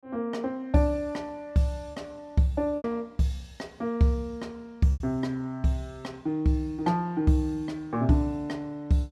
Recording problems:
packet loss; 2% of the sound replaced, filled with repeated pitch periods

